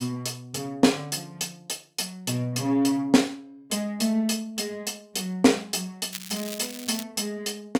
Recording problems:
crackle; at 6 s; loose cable, SNR 11 dB

